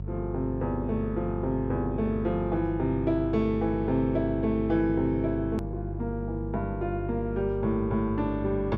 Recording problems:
electrical hum; 50 Hz, harmonics up to 400 Hz, SNR 7 dB
edit click; at 5.5 s

